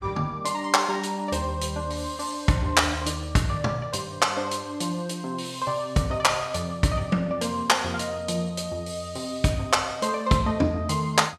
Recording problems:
none

